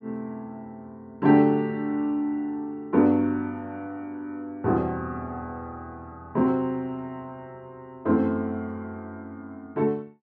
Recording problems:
none

